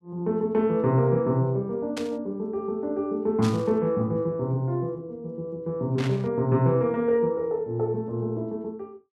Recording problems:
burst of static; at 2 s, at 3.5 s and at 6 s; peak -6 dB vs average level

